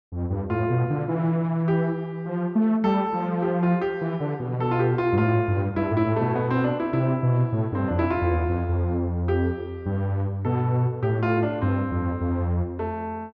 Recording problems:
none

